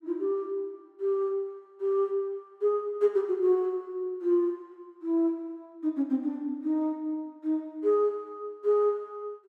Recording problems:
none

